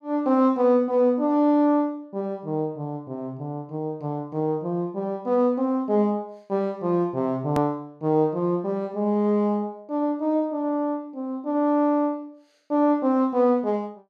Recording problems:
hard cut with a click; at 7.5 s

